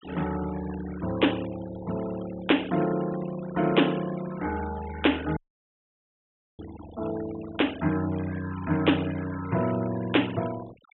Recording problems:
treble missing; nothing above 3.6 kHz
noise reduction artefacts; signal-to-artefact ratio 17 dB
dropout; at 5.5 s for 1 s

